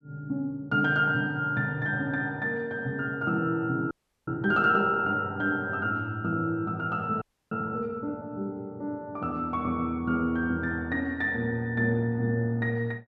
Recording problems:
frozen audio; at 4 s and at 7 s

